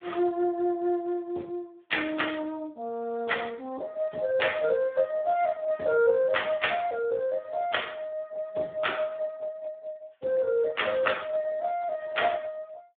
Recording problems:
phone line; 240 Hz to 3.5 kHz, Speex

